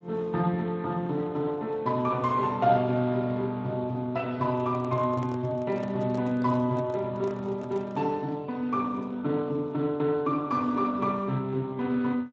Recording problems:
codec artefacts; Speex, log-spectral distance 2 dB
microphone handling noise; from 4.5 to 8 s; peak -9 dB vs average level

